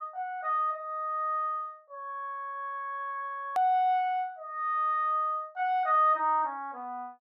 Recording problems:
edit click; at 3.5 s

